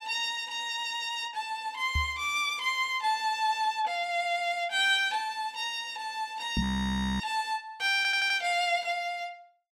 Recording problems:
microphone thump; at 2 s and at 6.5 s; peak +3 dB vs average level
audio freezing; at 6.5 s for 0.5 s
stutter; at 8 s

